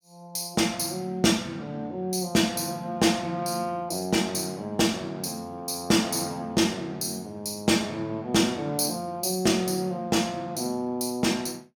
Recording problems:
none

